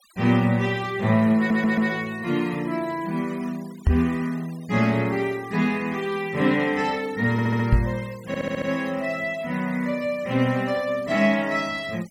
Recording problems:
denoising artefacts; signal-to-artefact ratio 22 dB
stutter; at 1.5 s, at 7.5 s and at 8.5 s
knock on the microphone; at 4 s and at 7.5 s; peak +7 dB vs average level

